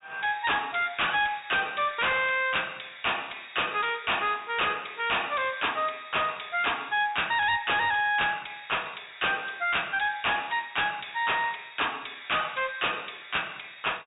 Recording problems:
low-pass filter; nothing above 4 kHz
distorted audio; hard clipping, signal-to-distortion ratio 6 dB

